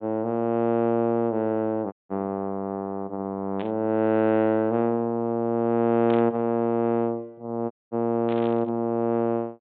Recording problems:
treble cut off; nothing above 4 kHz
audio cutting out; at 2 s and at 7.5 s
static burst; at 3.5 s, at 6 s and at 8.5 s; peak -11 dB vs average level

